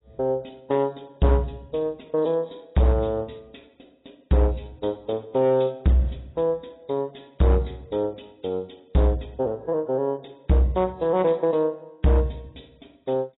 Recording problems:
codec artefacts; AAC, log-spectral distance 6 dB, nothing above 3.8 kHz
distorted audio; hard clipping, signal-to-distortion ratio 12 dB

